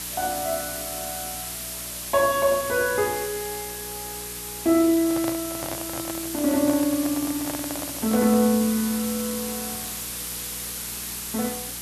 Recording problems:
mains hum; 60 Hz, harmonics up to 420 Hz, SNR 22 dB
background hiss; slope +1 dB per octave, SNR 6 dB
microphone handling noise; from 5 to 8.5 s; peak -3 dB vs average level

